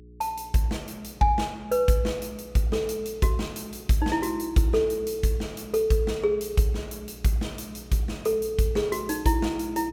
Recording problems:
electrical hum; 60 Hz, harmonics up to 420 Hz, SNR 22 dB

